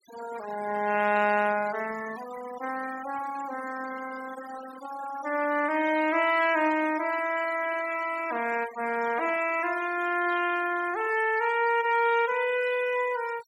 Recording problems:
noise reduction artefacts; signal-to-artefact ratio 14 dB

